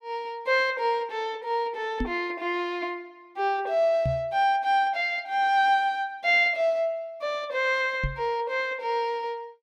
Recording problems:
microphone bump; at 2 s, at 4 s and at 8 s; peak 0 dB vs average level

